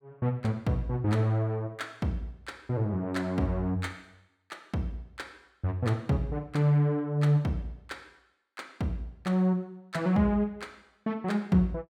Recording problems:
none

